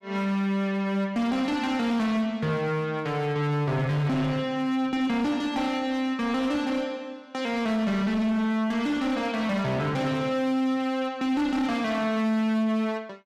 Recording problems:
distorted audio; hard clipping, uneven, signal-to-distortion ratio 11 dB

